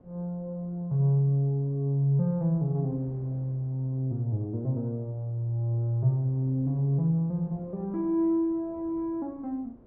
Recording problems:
wind on the microphone; below 440 Hz, SNR 26 dB

